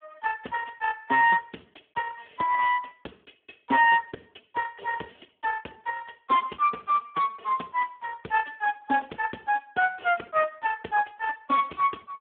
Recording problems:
telephone audio; 240 Hz to 2.1 kHz, Speex

